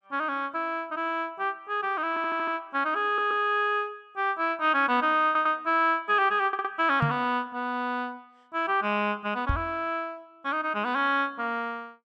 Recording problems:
audio stuttering; 4 times, first at 2 s
microphone bump; at 7 s and at 9.5 s; peak +4 dB vs average level

